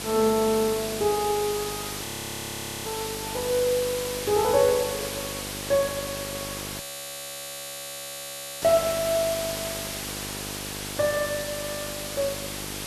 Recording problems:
electrical hum; 50 Hz, harmonics up to 1.3 kHz, SNR 14 dB
hiss; slope 0 dB per octave, SNR 6 dB
frozen audio; at 2 s for 1 s and at 7 s for 2 s

